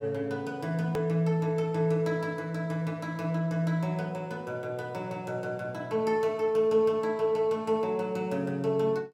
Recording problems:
click at an edit; at 1 s

